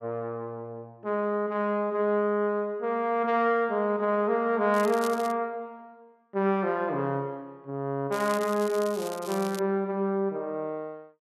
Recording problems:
crackle; at 4.5 s and from 8 to 9.5 s; loose cable, SNR 16 dB

